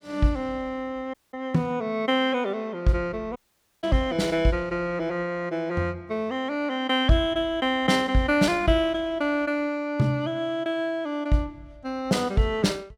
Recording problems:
audio cutting out; at 1 s and at 3.5 s

